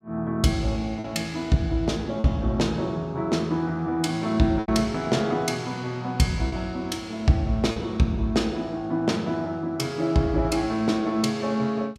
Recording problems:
lost packets; 2% of the sound replaced, filled with repeated pitch periods

